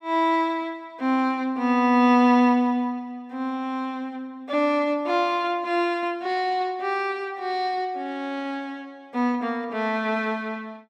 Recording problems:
none

